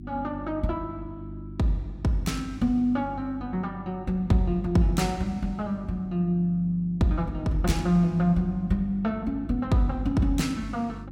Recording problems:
hum; 50 Hz, harmonics up to 350 Hz, SNR 14 dB

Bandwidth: 16 kHz